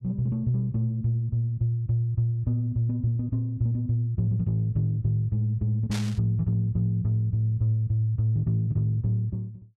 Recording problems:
static burst; at 6 s; peak -6 dB vs average level

